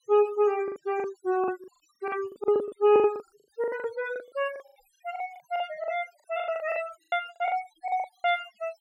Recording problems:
noise reduction artefacts; signal-to-artefact ratio 19 dB
lost packets; 18% of the sound replaced, filled with the last packet

